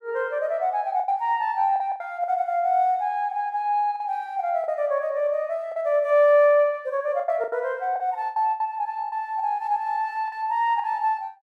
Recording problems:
packet loss; 7% of the sound replaced, filled with the last packet

